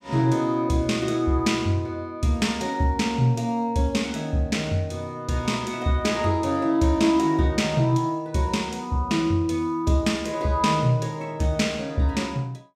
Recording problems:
none

